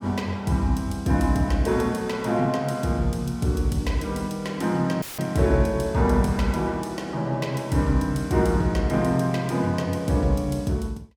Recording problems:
audio cutting out; at 5 s; filled with static

